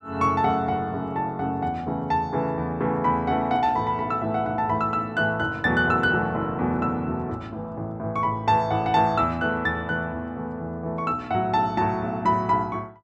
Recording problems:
none

